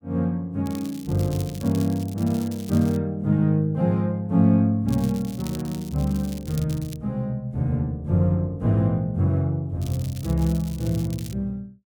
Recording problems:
crackle; from 0.5 to 3 s, from 5 to 7 s and from 10 to 11 s; loose cable, SNR 19 dB

